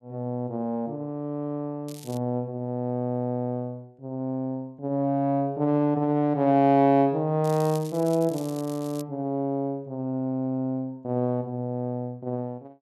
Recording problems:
crackle; at 2 s and from 7.5 to 9 s; loose cable, SNR 19 dB

